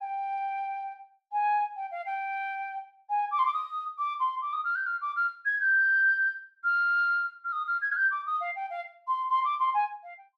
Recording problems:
none

